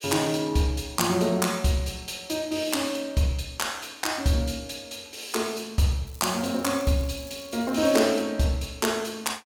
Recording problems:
crackle; from 6 to 8 s; loose cable, SNR 22 dB

